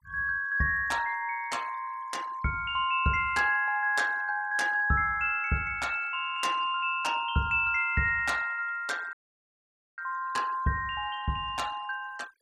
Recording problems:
denoising artefacts; signal-to-artefact ratio 23 dB
dropout; at 9 s for 1 s

